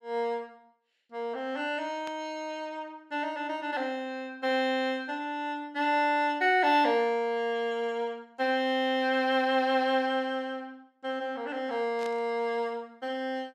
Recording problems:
burst of static; at 2 s and at 12 s; peak -12 dB vs average level

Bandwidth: 15.5 kHz